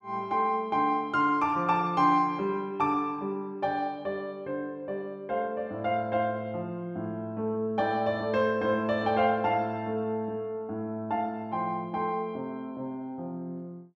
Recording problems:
none

